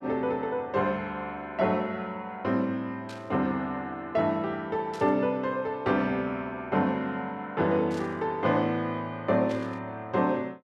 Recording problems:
burst of static; 4 times, first at 3 s; peak -11 dB vs average level

